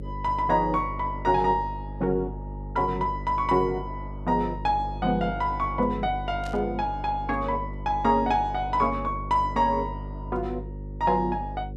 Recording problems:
hum; 50 Hz, harmonics up to 550 Hz, SNR 10 dB
burst of static; at 6.5 s; peak -13 dB vs average level

